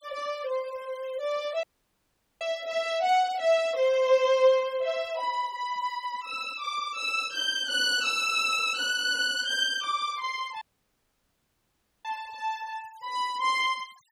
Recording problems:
noise reduction artefacts; signal-to-artefact ratio 24 dB
dropout; at 1.5 s for 1 s and at 11 s for 1.5 s

